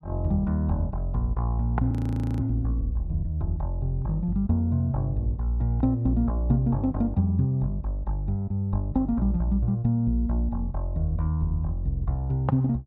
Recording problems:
audio freezing; at 2 s

